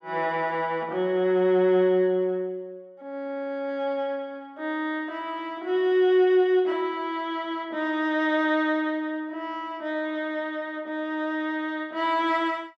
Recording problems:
none

